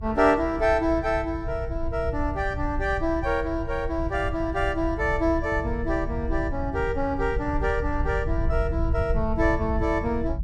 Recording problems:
rumble; below 86 Hz, SNR 6 dB

